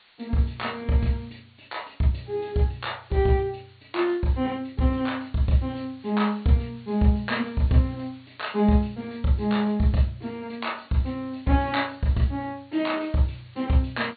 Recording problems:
treble cut off; nothing above 4.5 kHz
background hiss; SNR 29 dB

